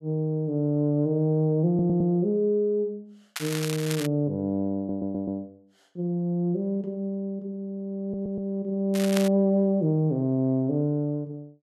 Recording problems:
audio stuttering; at 1.5 s, at 5 s and at 8 s
crackling; at 3.5 s and at 9 s; loose cable, SNR 9 dB

